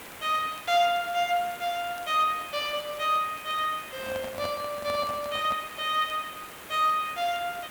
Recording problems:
hiss; SNR 14 dB
crackling; vinyl, SNR 28 dB
handling noise; from 4 to 5.5 s; peak -5 dB vs average level

